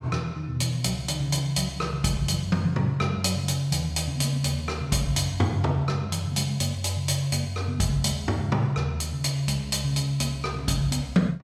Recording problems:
none

